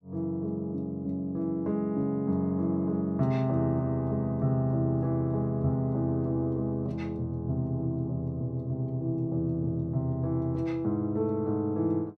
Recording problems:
none

